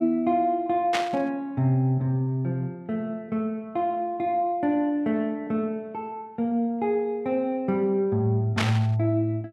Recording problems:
static burst; at 1 s and at 8.5 s; peak +3 dB vs average level

